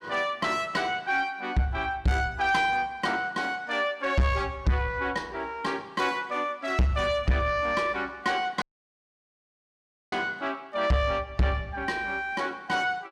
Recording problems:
distorted audio; soft clipping, signal-to-distortion ratio 7 dB
dropout; at 8.5 s for 1.5 s

